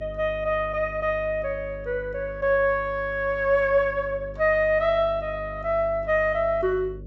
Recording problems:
treble cut off; nothing above 8 kHz
hum; 50 Hz, harmonics up to 600 Hz, SNR 17 dB

